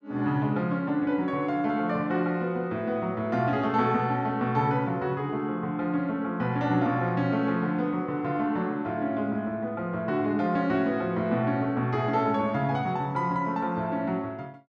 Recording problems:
none

